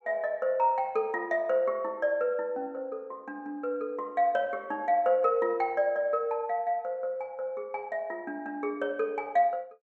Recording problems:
none

